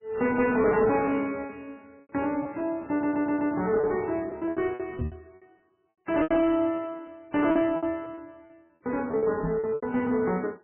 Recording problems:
codec artefacts; AAC, then MP3, log-spectral distance 2 dB, nothing above 2.7 kHz
distorted audio; soft clipping, signal-to-distortion ratio 11 dB
packet loss; 12% of the sound replaced, filled with repeated pitch periods
audio stuttering; at 3 s
microphone bump; at 5 s and at 9.5 s; peak -1 dB vs average level

